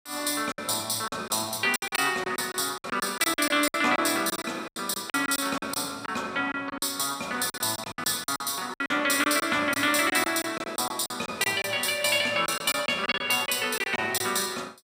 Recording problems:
lost packets; 13% of the sound replaced, filled with silence

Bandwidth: 15.5 kHz